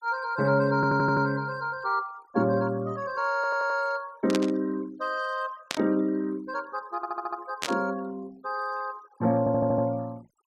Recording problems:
denoising artefacts; signal-to-artefact ratio 25 dB
stutter; 4 times, first at 1 s
burst of static; at 4.5 s, at 5.5 s and at 7.5 s; peak +2 dB vs average level

